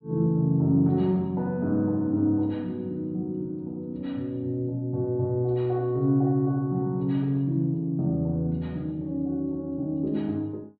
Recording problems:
treble cut off; nothing above 4.4 kHz

